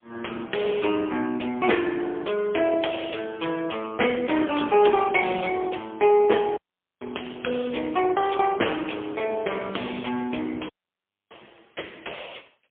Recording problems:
phone line; 260 Hz to 3.4 kHz, AMR-NB, then MP3
audio cutting out; at 6.5 s and at 11 s for 0.5 s

